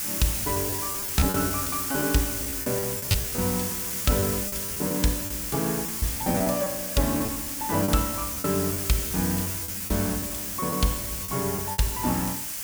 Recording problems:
hiss; slope +1 dB per octave, SNR 0 dB
lost packets; 12% of the sound replaced, filled with repeated pitch periods

